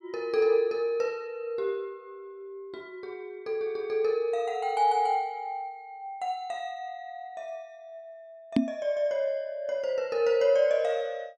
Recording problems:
microphone thump; at 8.5 s; peak +8 dB vs average level

